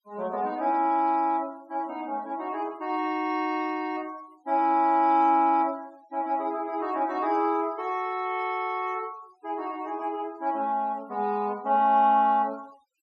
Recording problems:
denoising artefacts; signal-to-artefact ratio 27 dB

